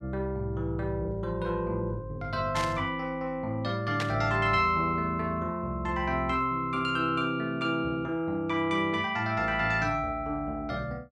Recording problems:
burst of static; at 2.5 s and at 4 s; peak 0 dB vs average level

